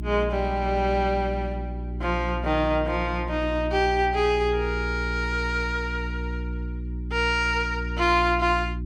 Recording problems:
hum; 60 Hz, harmonics up to 360 Hz, SNR 7 dB

